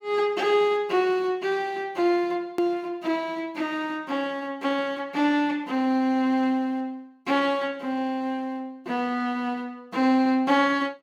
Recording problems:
edit click; at 2.5 s

